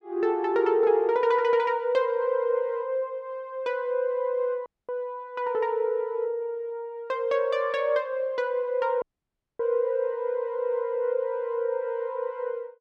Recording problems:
audio cutting out; at 4.5 s and at 9 s for 0.5 s

